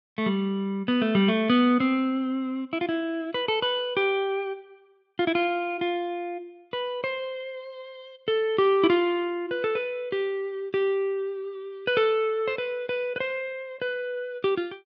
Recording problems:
none

